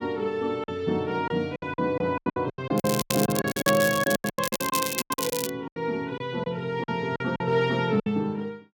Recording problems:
lost packets; 16% of the sound replaced, filled with silence
crackle; from 3 to 5.5 s; loose cable, SNR 4 dB

